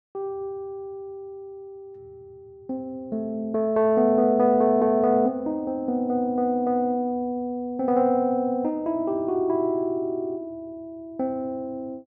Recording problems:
none

